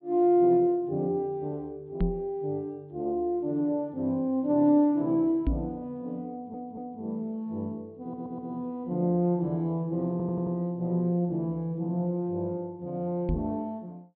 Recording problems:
treble cut off; nothing above 4.4 kHz
microphone thump; at 2 s, at 5.5 s and at 13 s; peak +4 dB vs average level
audio stuttering; at 6.5 s, at 8 s and at 10 s

